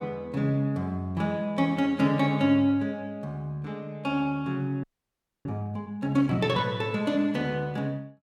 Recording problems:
frozen audio; at 5 s for 0.5 s

